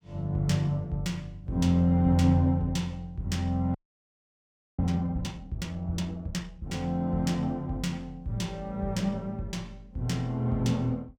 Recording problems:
frozen audio; at 4 s for 1 s

